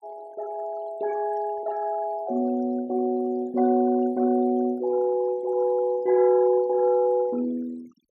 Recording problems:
denoising artefacts; signal-to-artefact ratio 24 dB

